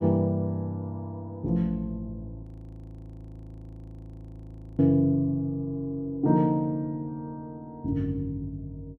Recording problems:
audio freezing; at 2.5 s for 2.5 s

